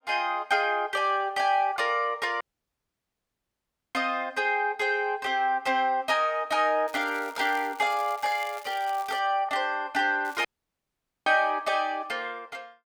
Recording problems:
dropout; at 2.5 s for 1.5 s and at 10 s for 1 s
crackle; from 7 to 9 s and at 10 s; loose cable, SNR 21 dB

